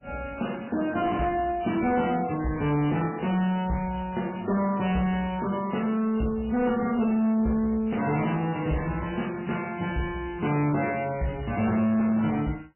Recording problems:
lossy compression; MP3, log-spectral distance 7 dB, nothing above 3 kHz
distortion; soft clipping, signal-to-distortion ratio 11 dB

